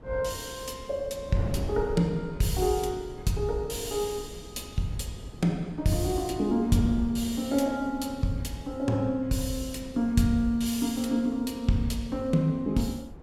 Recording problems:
wind on the microphone; below 260 Hz, SNR 14 dB

